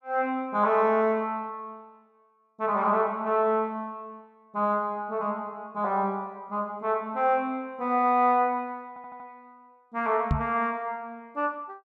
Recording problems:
audio stuttering; at 9 s
microphone thump; at 10 s; peak +5 dB vs average level

